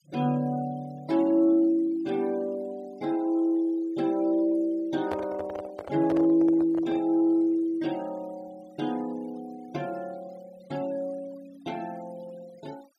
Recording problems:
noise reduction artefacts; signal-to-artefact ratio 25 dB
microphone handling noise; from 5 to 7 s; peak -2 dB vs average level

